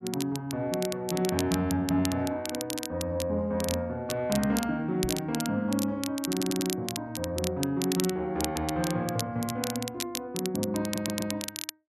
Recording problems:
crackling; vinyl, SNR 7 dB
microphone thump; at 5 s; peak -2 dB vs average level
stutter; at 6.5 s and at 11 s

